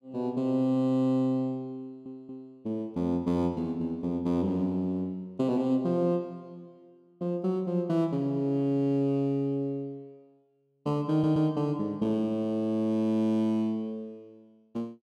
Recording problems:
stutter; at 2 s and at 11 s

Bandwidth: 13 kHz